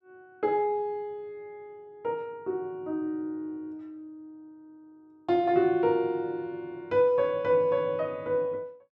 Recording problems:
none

